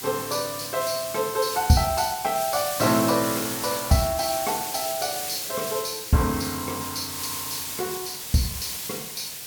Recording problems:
background hiss; SNR 4 dB

